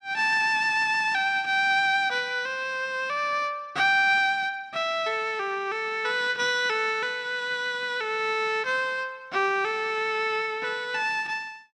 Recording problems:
none

